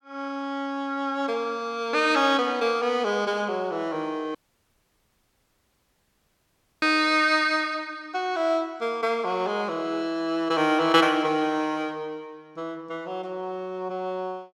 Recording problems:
audio cutting out; at 4.5 s for 2.5 s

